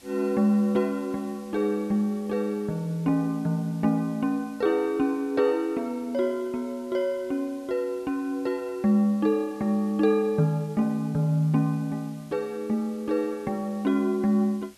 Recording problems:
hiss; SNR 27 dB

